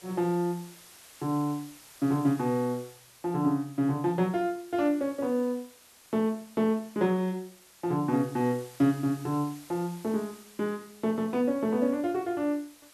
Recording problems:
background hiss; slope 0 dB per octave, SNR 22 dB

